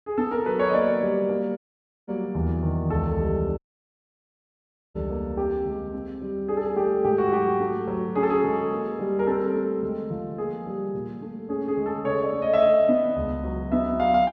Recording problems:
dropout; at 1.5 s and at 3.5 s for 1.5 s

